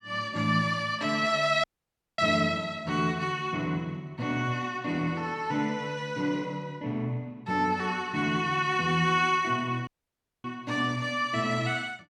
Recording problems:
dropout; at 1.5 s for 0.5 s and at 10 s for 0.5 s

